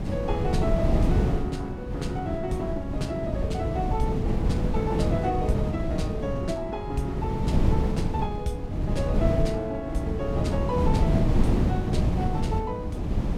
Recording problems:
wind noise; below 210 Hz, SNR -4 dB

